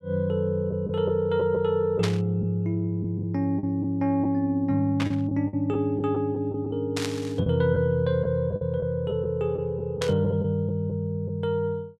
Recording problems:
packet loss; 5% of the sound replaced, filled with the last packet
burst of static; 4 times, first at 2 s; peak -1 dB vs average level

